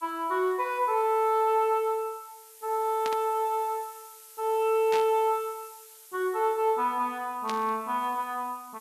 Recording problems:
hiss; slope +4 dB per octave, SNR 22 dB
static burst; at 3 s, at 5 s and at 7.5 s; peak -5 dB vs average level

